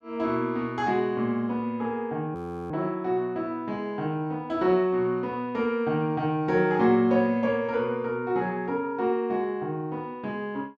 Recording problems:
frozen audio; at 2.5 s

